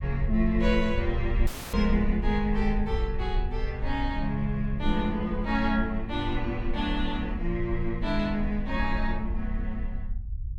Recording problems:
rumble; below 58 Hz, SNR 4 dB
dropout; at 1.5 s

